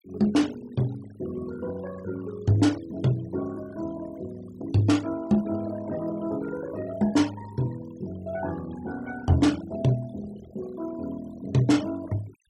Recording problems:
denoising artefacts; signal-to-artefact ratio 20 dB

